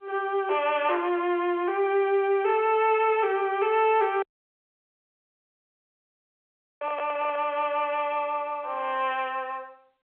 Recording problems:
phone line; 370 Hz to 3.4 kHz, G.711
distortion; soft clipping, signal-to-distortion ratio 12 dB
dropout; at 4 s for 2.5 s
microphone handling noise; at 7 s; peak -5 dB vs average level

